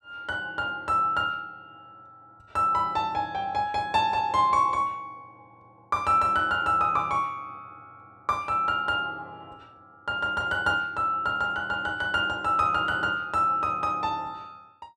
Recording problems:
none

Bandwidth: 13 kHz